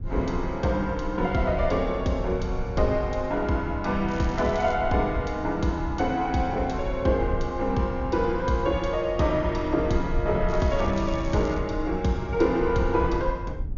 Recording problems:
treble missing; nothing above 6.9 kHz
low-frequency rumble; below 76 Hz, SNR 10 dB
crackle; at 4 s and from 10 to 12 s; loose cable, SNR 23 dB

